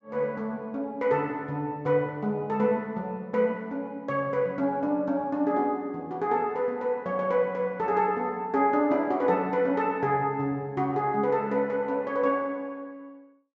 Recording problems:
treble missing; nothing above 7.7 kHz

